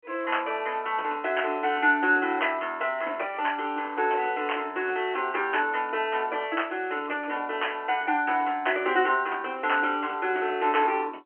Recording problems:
phone line; 300 Hz to 3.1 kHz, G.711
crackle; from 2.5 to 5 s and from 5 to 8 s; loose cable, SNR 30 dB

